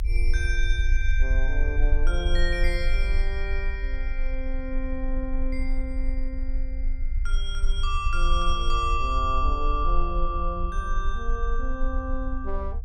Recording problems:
rumble; below 44 Hz, strongest tone 24 Hz, SNR -2 dB

